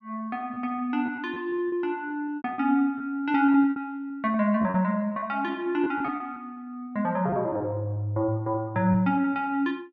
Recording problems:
lost packets; 11% of the sound replaced, filled with repeated pitch periods

